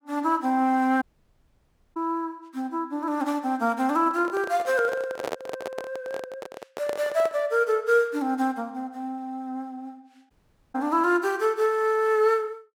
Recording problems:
audio cutting out; at 1 s for 1 s and at 10 s
handling noise; from 4 to 7.5 s; peak -1 dB vs average level

